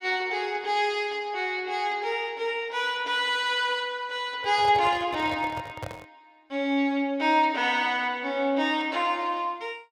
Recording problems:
microphone handling noise; from 4.5 to 6 s; peak -6 dB vs average level

